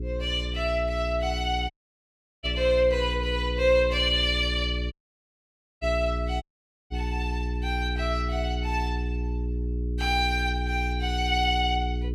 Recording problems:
hum; 60 Hz, harmonics up to 420 Hz, SNR 4 dB
dropout; at 1.5 s for 0.5 s, at 5 s for 1 s and at 6.5 s

